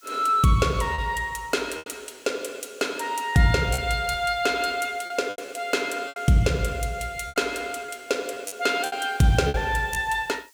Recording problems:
hiss; slope +5 dB per octave, SNR 30 dB
packet loss; 7% of the sound replaced, filled with repeated pitch periods

